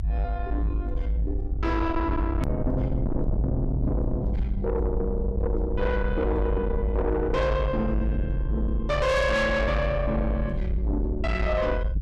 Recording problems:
distorted audio; soft clipping, signal-to-distortion ratio 8 dB
low-frequency rumble; below 88 Hz, strongest tone 54 Hz, SNR 2 dB
hard cut with a click; at 2.5 s

